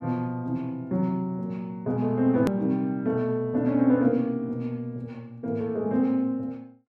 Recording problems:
click at an edit; at 2.5 s

